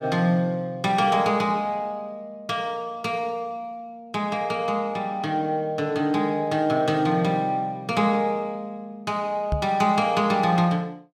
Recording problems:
knock on the microphone; at 9.5 s; peak +1 dB vs average level

